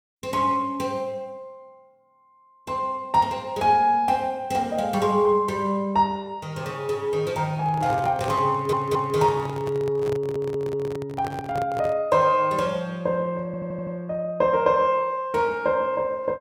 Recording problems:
handling noise; from 7.5 to 12 s; peak -4 dB vs average level
stutter; at 8.5 s, at 10 s and at 13 s

